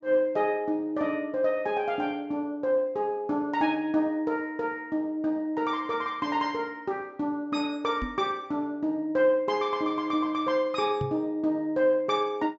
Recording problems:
treble cut off; nothing above 8 kHz
microphone thump; at 8 s and at 11 s; peak -1 dB vs average level

